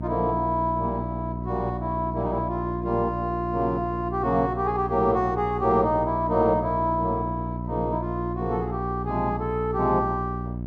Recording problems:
hum; 60 Hz, harmonics up to 660 Hz, SNR 6 dB

